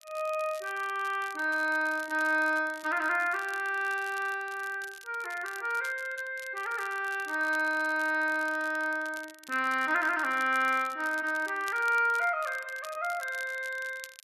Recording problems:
crackling; vinyl, SNR 20 dB

